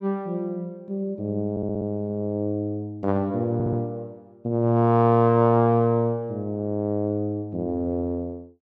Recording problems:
stutter; at 1.5 s and at 3.5 s

